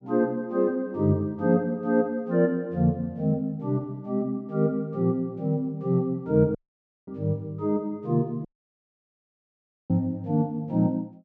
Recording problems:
audio cutting out; at 6.5 s for 0.5 s and at 8.5 s for 1.5 s

